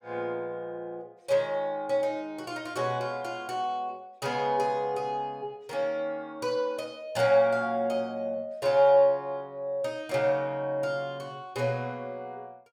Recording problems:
none

